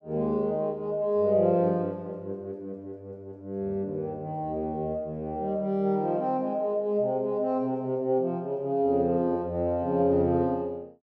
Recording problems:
none

